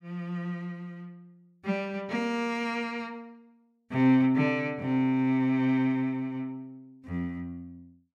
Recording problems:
none

